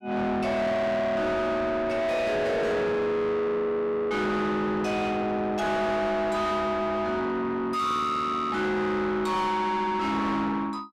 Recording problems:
distorted audio; soft clipping, signal-to-distortion ratio 7 dB

